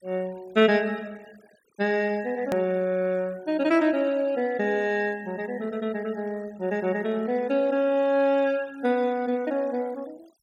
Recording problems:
noise reduction artefacts; signal-to-artefact ratio 25 dB
edit click; at 2.5 s

